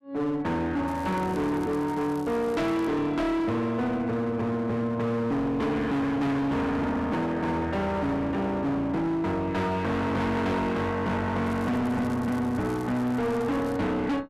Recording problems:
distortion; hard clipping, uneven, signal-to-distortion ratio 6 dB
crackle; from 1 to 3 s and from 11 to 14 s; loose cable, SNR 24 dB

